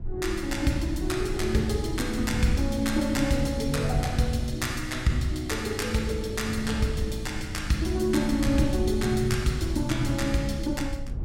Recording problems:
low-frequency rumble; below 80 Hz, SNR 12 dB
wind noise; below 130 Hz, SNR 11 dB

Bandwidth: 16.5 kHz